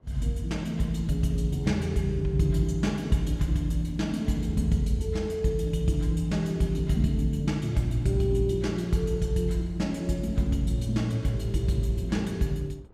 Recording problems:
wind noise; below 430 Hz, SNR 26 dB

